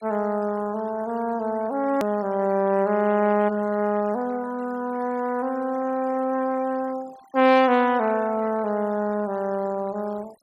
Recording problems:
denoising artefacts; signal-to-artefact ratio 23 dB
hard cut with a click; at 2 s

